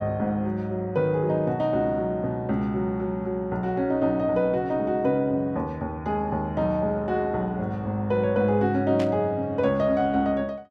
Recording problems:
burst of static; at 9 s; peak -8 dB vs average level

